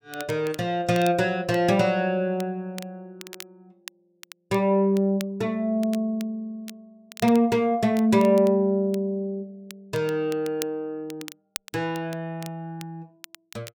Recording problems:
crackle; vinyl, SNR 19 dB

